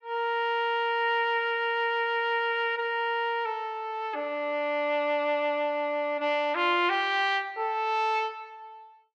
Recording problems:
none

